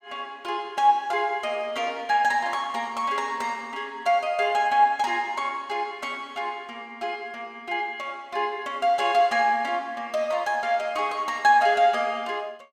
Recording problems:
none

